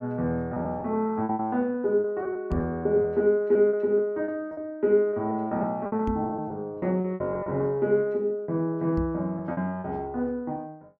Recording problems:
lost packets; 11% of the sound replaced, filled with repeated pitch periods
microphone bump; at 2.5 s, at 6 s and at 9 s; peak -1 dB vs average level

